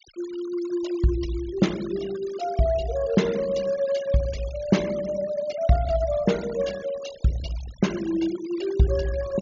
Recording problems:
low-pass filter; nothing above 7.1 kHz
noise reduction artefacts; signal-to-artefact ratio 17 dB

